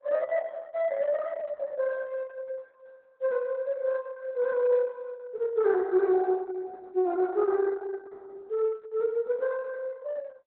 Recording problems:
lossy compression; Opus, log-spectral distance 2 dB, nothing above 4 kHz

